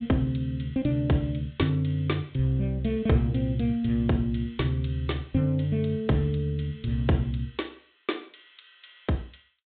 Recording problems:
treble cut off; nothing above 4 kHz

